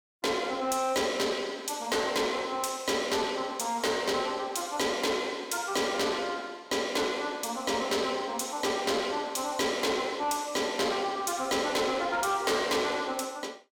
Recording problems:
distortion; soft clipping, signal-to-distortion ratio 11 dB

